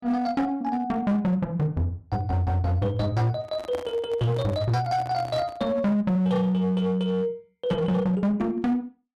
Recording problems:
distortion; hard clipping, uneven, signal-to-distortion ratio 11 dB
handling noise; from 3.5 to 5.5 s; peak -7 dB vs average level

